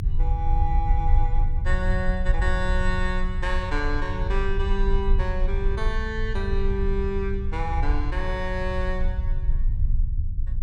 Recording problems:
low-frequency rumble; below 60 Hz, strongest tone 24 Hz, SNR -3 dB

